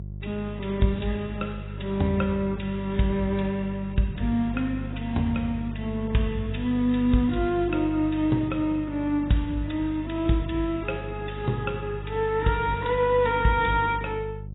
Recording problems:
lossy compression; AAC, log-spectral distance 3 dB, nothing above 3.8 kHz
hum; 50 Hz, harmonics up to 400 Hz, SNR 10 dB

